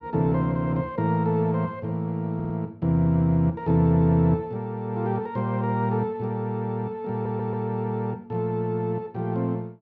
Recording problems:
stutter; at 2.5 s and at 7 s

